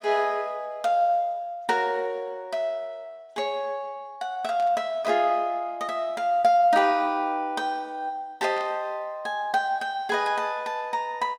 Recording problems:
burst of static; at 4.5 s and at 8.5 s; peak -13 dB vs average level

